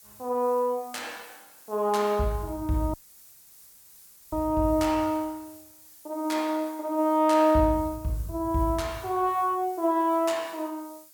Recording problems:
background hiss; SNR 22 dB
dropout; at 3 s for 1.5 s

